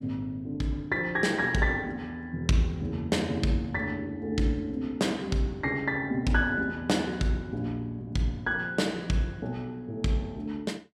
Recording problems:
none

